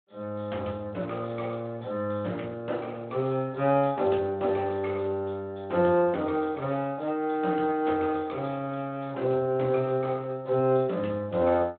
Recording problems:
phone line; 220 Hz to 3.8 kHz, Speex

